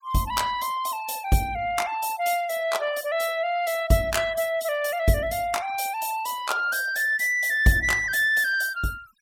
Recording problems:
denoising artefacts; signal-to-artefact ratio 21 dB

